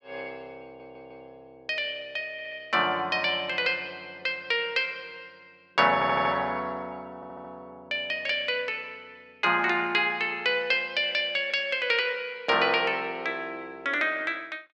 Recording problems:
audio stuttering; 4 times, first at 0.5 s

